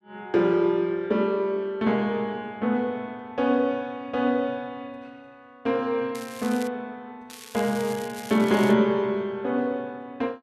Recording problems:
crackling; at 6 s and from 7.5 to 8.5 s; loose cable, SNR 17 dB

